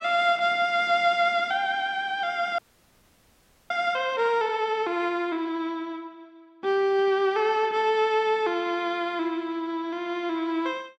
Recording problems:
frozen audio; at 2.5 s for 1 s

